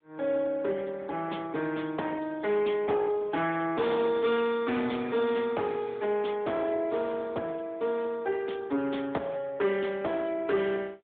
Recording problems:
telephone audio; 190 Hz to 3.6 kHz, AMR-NB
distorted audio; hard clipping, uneven, signal-to-distortion ratio 12 dB

